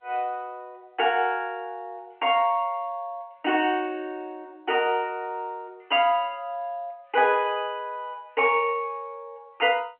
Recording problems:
telephone audio; 280 Hz to 3.1 kHz, G.711

